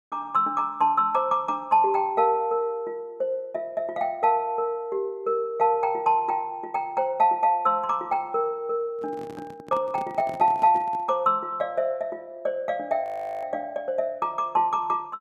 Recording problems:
handling noise; from 9 to 11 s; peak -11 dB vs average level
audio freezing; at 13 s

